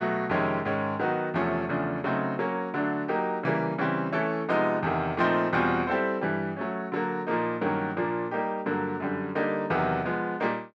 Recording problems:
none

